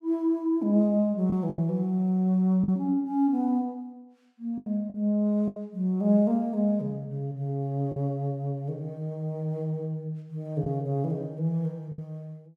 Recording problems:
lost packets; 4% of the sound replaced, filled with the last packet

